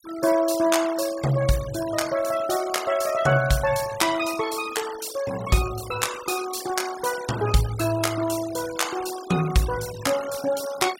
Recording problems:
denoising artefacts; signal-to-artefact ratio 14 dB

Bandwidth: 16 kHz